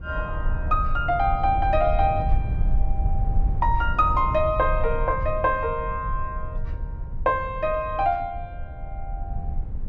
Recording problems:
low-frequency rumble; below 70 Hz, SNR 5 dB

